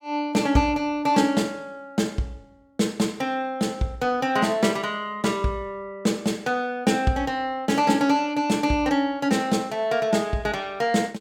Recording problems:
none

